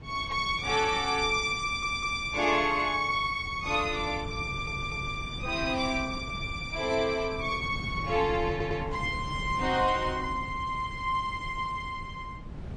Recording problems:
lossy codec; MP3, log-spectral distance 2 dB
wind noise; below 190 Hz, SNR 12 dB
audio stuttering; at 1.5 s, at 4.5 s and at 8.5 s

